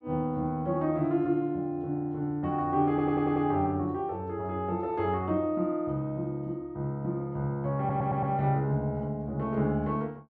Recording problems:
audio stuttering; at 3 s and at 8 s

